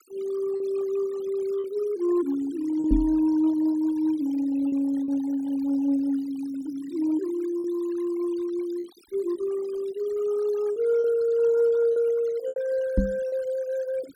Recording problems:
noise reduction artefacts; signal-to-artefact ratio 22 dB
packet loss; 4% of the sound replaced, filled with repeated pitch periods
microphone thump; at 3 s and at 13 s; peak +6 dB vs average level

